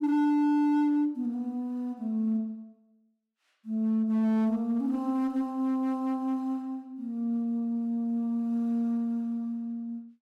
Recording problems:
distortion; hard clipping, signal-to-distortion ratio 10 dB

